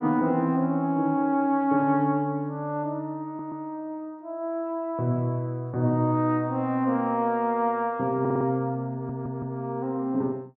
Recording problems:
stutter; at 3.5 s, at 8 s and at 9 s

